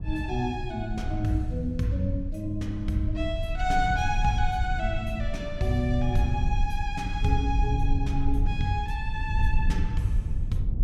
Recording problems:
low-frequency rumble; below 80 Hz, SNR 2 dB

